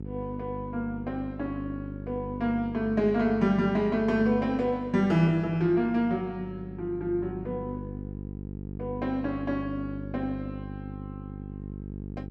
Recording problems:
hum; 50 Hz, harmonics up to 500 Hz, SNR 11 dB

